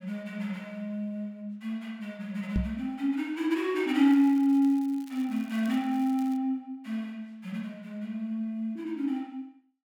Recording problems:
microphone bump; at 2.5 s; peak +4 dB vs average level
crackling; from 4 to 6.5 s; loose cable, SNR 25 dB

